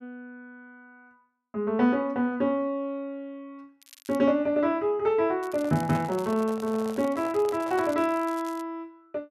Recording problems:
crackling; at 4 s and from 5.5 to 8.5 s; loose cable, SNR 22 dB
handling noise; from 5.5 to 8 s; peak -7 dB vs average level

